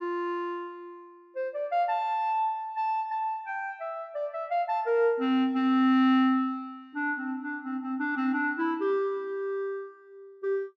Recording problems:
none

